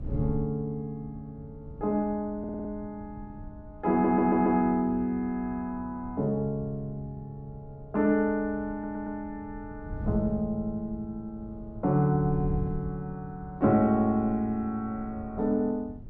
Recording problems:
wind on the microphone; below 130 Hz, SNR 14 dB
audio stuttering; at 2.5 s, at 4 s and at 8.5 s

